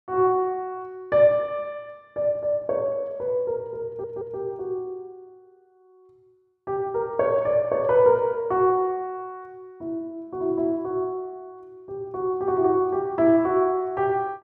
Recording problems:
audio stuttering; at 4 s

